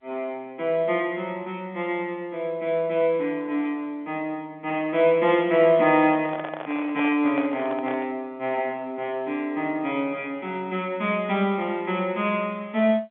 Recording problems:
telephone audio; 170 Hz to 3.5 kHz, G.711
microphone handling noise; from 6 to 8 s; peak -3 dB vs average level

